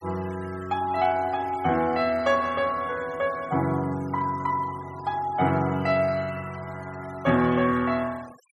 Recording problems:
denoising artefacts; signal-to-artefact ratio 22 dB

